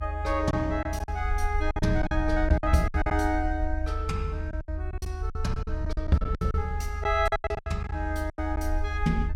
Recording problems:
low-frequency rumble; below 76 Hz, SNR 3 dB
lost packets; 13% of the sound replaced, filled with silence

